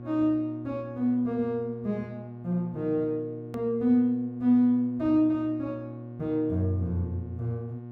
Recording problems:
electrical hum; 60 Hz, harmonics up to 720 Hz, SNR 13 dB
click at an edit; at 3.5 s

